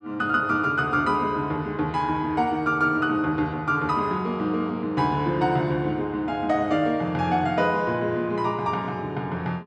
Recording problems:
none

